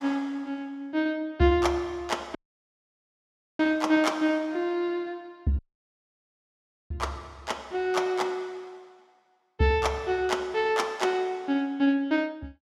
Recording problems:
dropout; at 2.5 s for 1 s and at 5.5 s for 1.5 s

